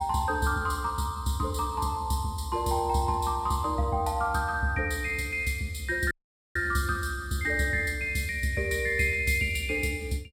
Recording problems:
audio cutting out; at 6 s

